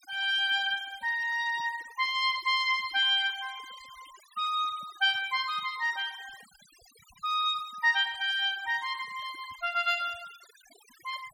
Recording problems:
noise reduction artefacts; signal-to-artefact ratio 22 dB

